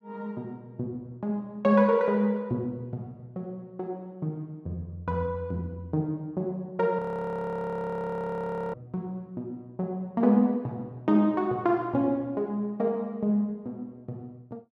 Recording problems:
audio freezing; at 7 s for 1.5 s

